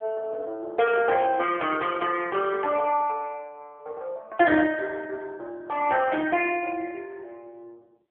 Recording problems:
telephone audio; 280 Hz to 3.2 kHz, AMR-NB

